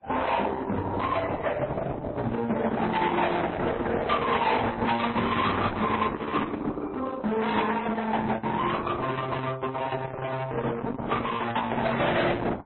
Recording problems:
lossy compression; Opus, then MP3, log-spectral distance 4 dB, nothing above 3.9 kHz
distortion; hard clipping, signal-to-distortion ratio 8 dB

